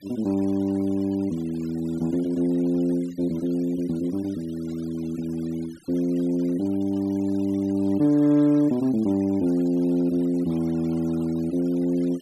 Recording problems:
denoising artefacts; signal-to-artefact ratio 25 dB

